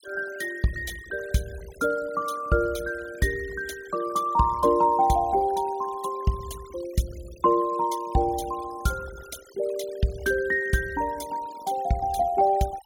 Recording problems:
denoising artefacts; signal-to-artefact ratio 20 dB

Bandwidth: 17.5 kHz